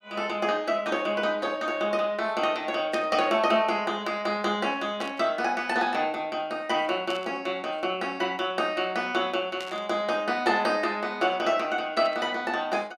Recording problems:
burst of static; 5 times, first at 3 s; peak -8 dB vs average level

